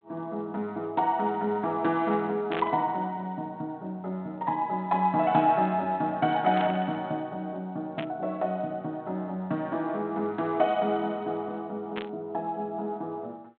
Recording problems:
telephone audio; 220 Hz to 3.7 kHz, G.726
static burst; 4 times, first at 2.5 s; peak -2 dB vs average level

